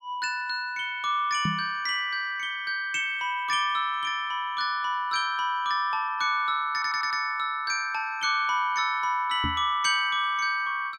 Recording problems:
knock on the microphone; at 1.5 s and at 9.5 s; peak 0 dB vs average level
audio stuttering; at 6.5 s

